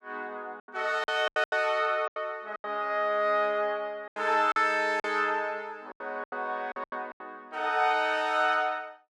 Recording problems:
lost packets; 11% of the sound replaced, filled with silence

